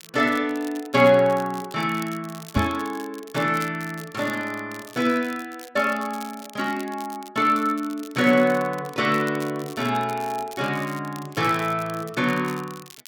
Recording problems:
crackle; vinyl, SNR 20 dB
microphone bump; at 2.5 s; peak +4 dB vs average level

